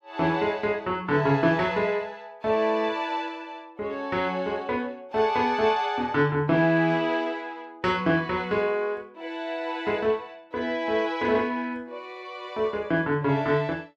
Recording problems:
none

